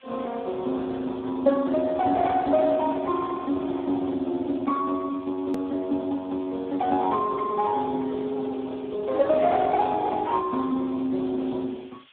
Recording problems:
telephone audio; 240 Hz to 2.1 kHz, Speex
background hiss; SNR 27 dB
hard cut with a click; at 5.5 s

